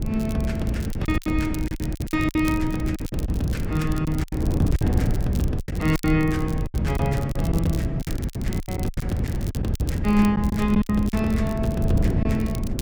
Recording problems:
wind noise; below 200 Hz, SNR 1 dB
crackling; vinyl, SNR 17 dB
lost packets; 12% of the sound replaced, filled with silence

